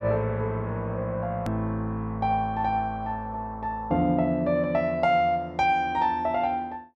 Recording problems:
click at an edit; at 1.5 s

